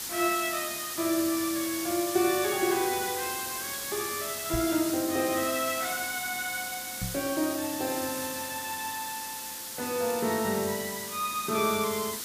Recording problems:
background hiss; SNR 4 dB
microphone bump; at 4.5 s and at 7 s; peak 0 dB vs average level

